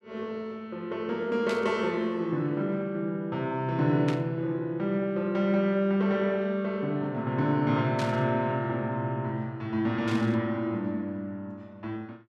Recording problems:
static burst; 4 times, first at 1.5 s; peak -4 dB vs average level

